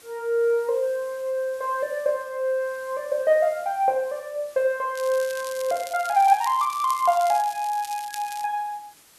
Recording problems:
background hiss; slope -1 dB per octave, SNR 25 dB
crackle; from 5 to 8.5 s; loose cable, SNR 15 dB

